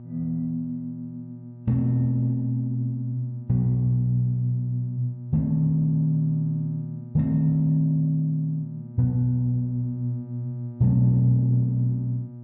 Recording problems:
low-pass filter; nothing above 7.8 kHz
hum; 60 Hz, harmonics up to 600 Hz, SNR 15 dB

